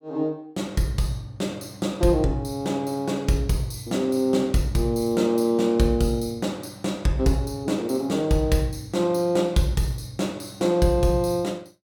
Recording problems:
none

